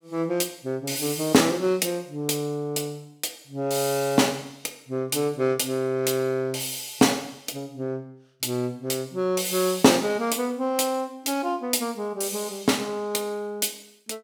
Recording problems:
none

